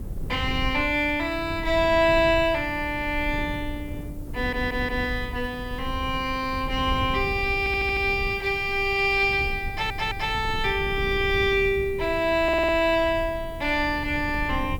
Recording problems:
background hiss; slope 0 dB per octave, SNR 29 dB
wind on the microphone; below 120 Hz, SNR 11 dB
audio stuttering; 4 times, first at 4.5 s

